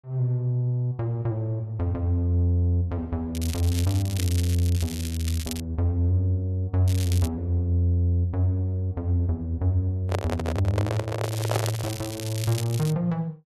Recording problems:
crackle; from 3.5 to 5.5 s, at 7 s and from 11 to 13 s; loose cable, SNR 11 dB
handling noise; from 10 to 12 s; peak +2 dB vs average level

